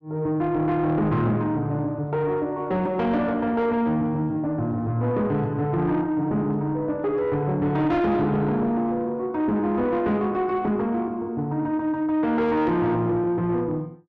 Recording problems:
distorted audio; soft clipping, signal-to-distortion ratio 10 dB

